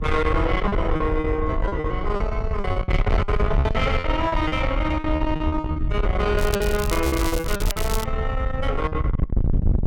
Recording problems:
distortion; soft clipping, signal-to-distortion ratio 7 dB
wind on the microphone; below 110 Hz, SNR 2 dB
packet loss; 11% of the sound replaced, filled with repeated pitch periods
crackle; from 6.5 to 8 s; loose cable, SNR 9 dB

